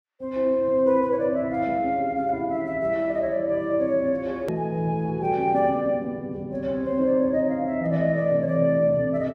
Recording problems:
edit click; at 4.5 s

